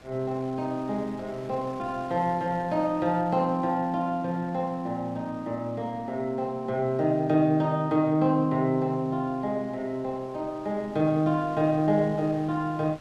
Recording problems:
wind noise; below 2.1 kHz, SNR 24 dB

